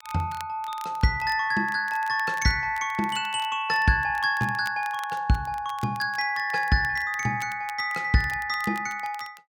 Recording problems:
crackle; vinyl, SNR 22 dB

